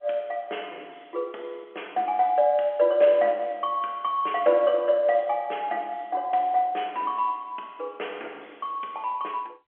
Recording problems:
phone line; 300 Hz to 3.3 kHz, G.711

